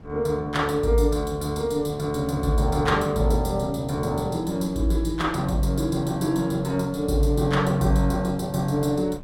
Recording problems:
wind noise; below 240 Hz, SNR 19 dB

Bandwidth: 16.5 kHz